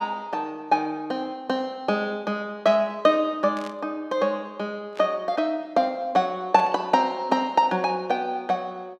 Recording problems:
burst of static; at 3.5 s, at 5 s and at 6.5 s; peak -12 dB vs average level

